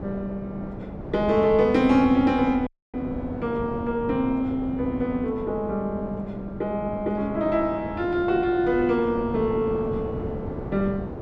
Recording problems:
wind on the microphone; below 470 Hz, SNR 10 dB
dropout; at 2.5 s

